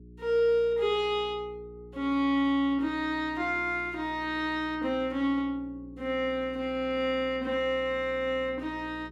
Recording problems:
hum; 60 Hz, harmonics up to 420 Hz, SNR 21 dB

